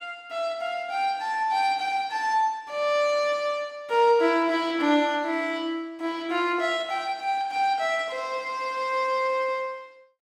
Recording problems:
none

